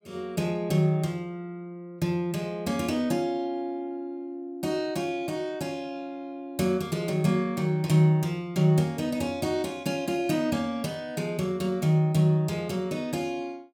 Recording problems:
none

